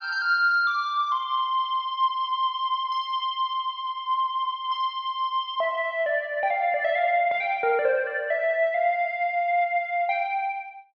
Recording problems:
low-pass filter; nothing above 6.6 kHz

